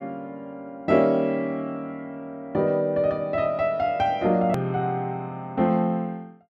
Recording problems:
click at an edit; at 4.5 s

